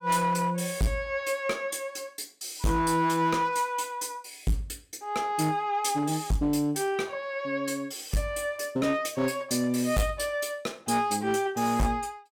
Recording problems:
distorted audio; hard clipping, uneven, signal-to-distortion ratio 10 dB

